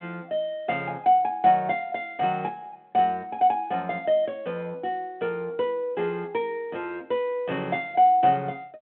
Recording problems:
telephone audio; 150 Hz to 3.5 kHz, G.726

